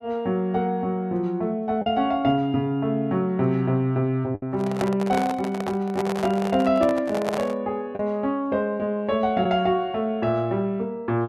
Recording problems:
packet loss; 1.3% of the sound replaced, filled with the last packet
handling noise; from 4.5 to 7.5 s; peak 0 dB vs average level

